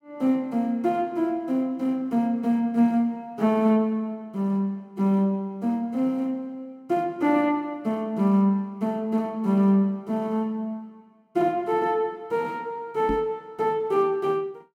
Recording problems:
microphone bump; at 13 s; peak 0 dB vs average level

